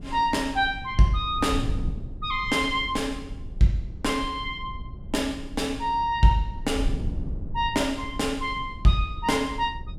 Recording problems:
wind noise; below 100 Hz, SNR 11 dB

